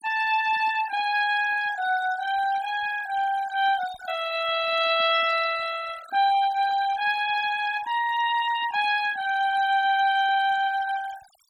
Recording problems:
denoising artefacts; signal-to-artefact ratio 14 dB

